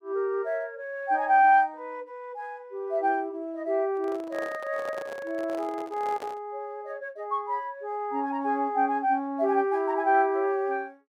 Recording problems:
handling noise; from 4 to 6.5 s; peak -9 dB vs average level

